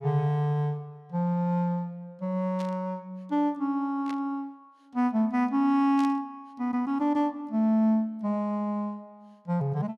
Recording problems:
static burst; at 2.5 s, at 4 s and at 6 s; peak -12 dB vs average level

